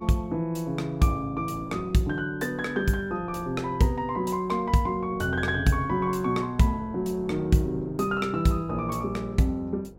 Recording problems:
hum; 50 Hz, harmonics up to 500 Hz, SNR 24 dB
wind noise; below 450 Hz, SNR 22 dB

